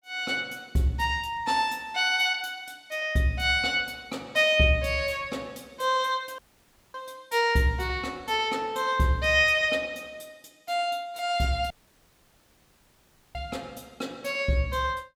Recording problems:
audio cutting out; at 6.5 s for 0.5 s and at 12 s for 1.5 s

